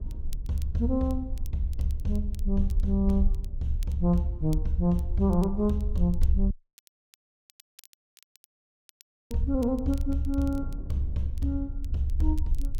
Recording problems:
low-frequency rumble; below 54 Hz, SNR 5 dB
wind noise; below 220 Hz, SNR 20 dB
crackling; vinyl, SNR 27 dB
dropout; at 6.5 s for 3 s

